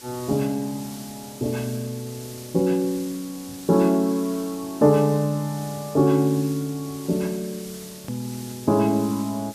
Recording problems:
background hiss; SNR 17 dB
edit click; at 8 s

